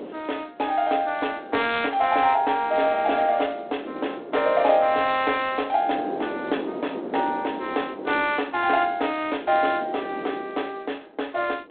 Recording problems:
phone line; 280 Hz to 3.6 kHz, G.726
wind on the microphone; below 520 Hz, SNR 12 dB

